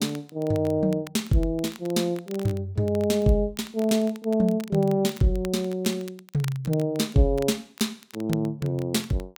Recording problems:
crackle; vinyl, SNR 21 dB

